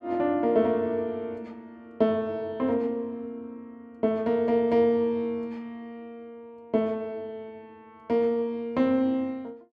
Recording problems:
none

